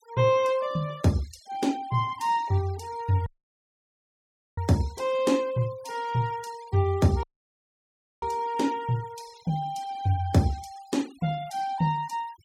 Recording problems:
denoising artefacts; signal-to-artefact ratio 22 dB
dropout; at 3.5 s for 1.5 s and at 7 s for 1 s

